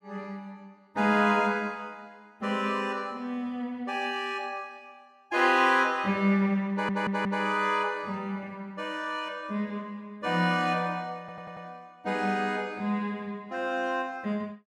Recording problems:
stutter; at 6.5 s and at 11 s

